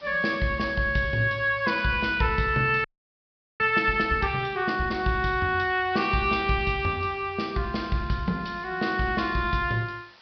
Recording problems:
low-pass filter; nothing above 5.5 kHz
hiss; SNR 27 dB
frozen audio; at 3 s for 1 s

